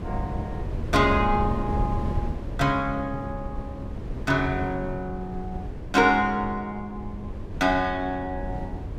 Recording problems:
wind noise; below 170 Hz, SNR 8 dB

